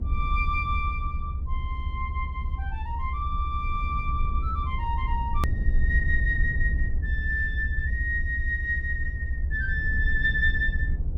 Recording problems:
low-frequency rumble; below 74 Hz, SNR 0 dB
hard cut with a click; at 5.5 s

